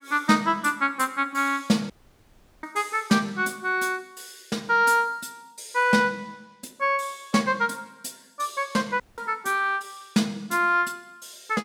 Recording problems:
dropout; at 2 s for 0.5 s and at 9 s

